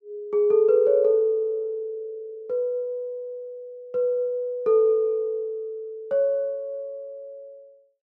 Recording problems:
none

